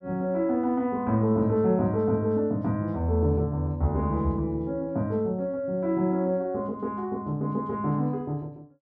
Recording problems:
none

